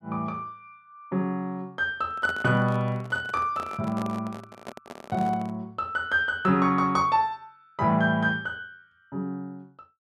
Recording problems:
microphone handling noise; from 2 to 5.5 s; peak -7 dB vs average level

